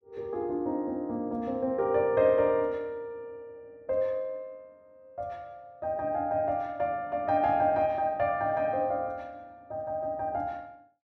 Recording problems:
none

